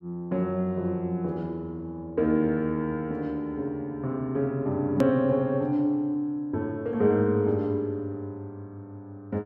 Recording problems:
click at an edit; at 5 s

